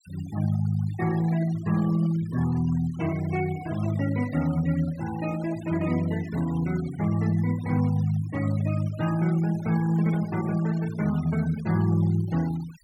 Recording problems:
noise reduction artefacts; signal-to-artefact ratio 19 dB

